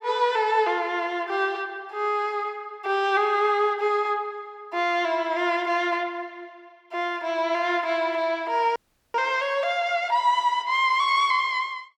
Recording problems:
audio freezing; at 9 s

